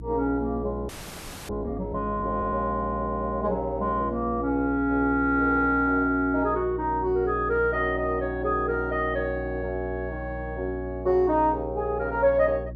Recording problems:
electrical hum; 60 Hz, harmonics up to 360 Hz, SNR 12 dB
frozen audio; at 1 s for 0.5 s

